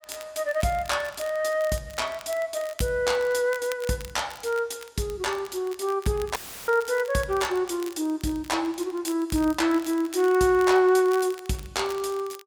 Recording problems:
crackling; vinyl, SNR 20 dB
audio cutting out; at 6.5 s; filled with static

